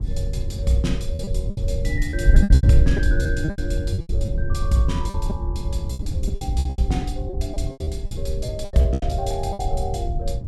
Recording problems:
electrical hum; 50 Hz, harmonics up to 800 Hz, SNR 25 dB
rumble; below 86 Hz, SNR 7 dB
wind on the microphone; below 90 Hz, SNR -3 dB
lost packets; 14% of the sound replaced, filled with repeated pitch periods

